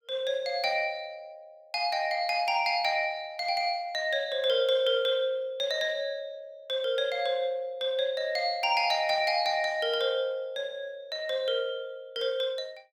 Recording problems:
none

